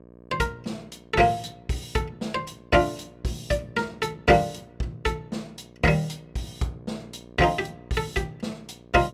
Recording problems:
mains hum; 60 Hz, harmonics up to 1.2 kHz, SNR 23 dB

